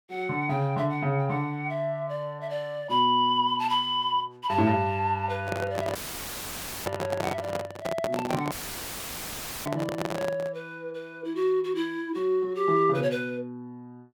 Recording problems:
handling noise; from 5.5 to 11 s; peak +1 dB vs average level
audio cutting out; at 6 s for 1 s and at 8.5 s for 1 s; filled with static

